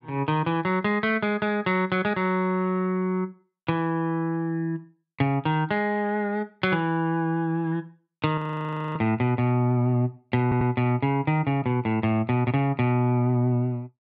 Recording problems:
audio freezing; at 8.5 s for 0.5 s
stutter; at 10 s

